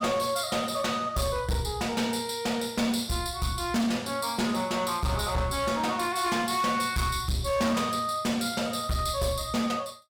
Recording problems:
distortion; hard clipping, signal-to-distortion ratio 10 dB

